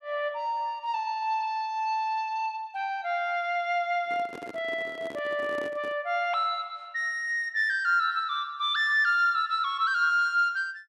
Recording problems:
handling noise; from 4 to 6 s; peak -10 dB vs average level

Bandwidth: 12.5 kHz